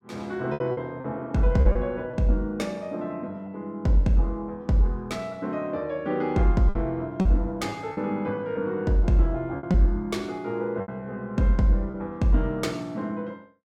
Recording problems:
lost packets; 5% of the sound replaced, filled with repeated pitch periods

